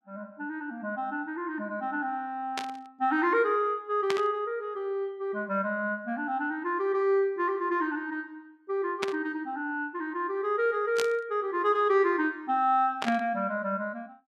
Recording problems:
static burst; 5 times, first at 2.5 s; peak +1 dB vs average level

